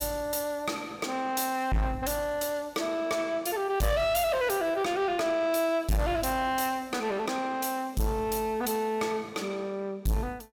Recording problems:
distortion; soft clipping, signal-to-distortion ratio 7 dB

